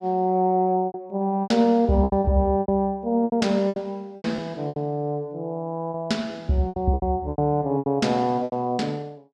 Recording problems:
lost packets; 12% of the sound replaced, filled with repeated pitch periods

